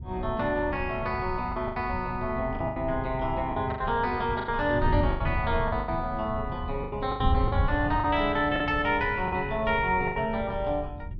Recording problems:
wind on the microphone; below 110 Hz, SNR 7 dB
lost packets; 9% of the sound replaced, filled with the last packet

